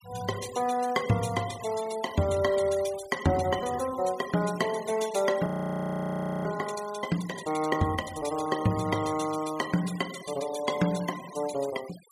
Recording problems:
noise reduction artefacts; signal-to-artefact ratio 15 dB
audio freezing; at 5.5 s for 1 s

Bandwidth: 15 kHz